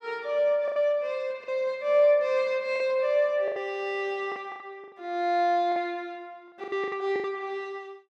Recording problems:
lost packets; 9% of the sound replaced, filled with the last packet

